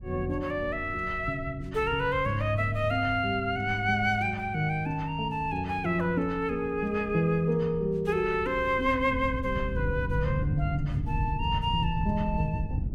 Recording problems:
wind noise; below 120 Hz, SNR 9 dB

